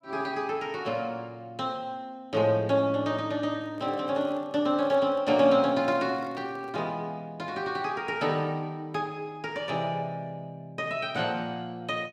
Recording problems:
handling noise; from 3.5 to 7 s; peak -12 dB vs average level

